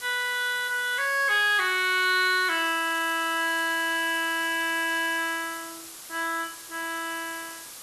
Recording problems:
hiss; slope +1 dB per octave, SNR 14 dB

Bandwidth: 12.5 kHz